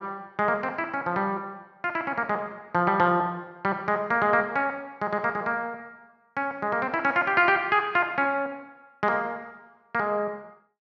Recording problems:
none

